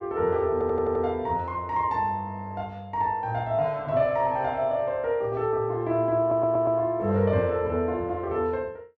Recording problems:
audio stuttering; at 0.5 s and at 6 s

